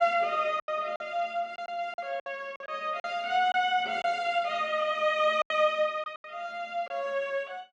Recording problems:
lost packets; 8% of the sound replaced, filled with silence

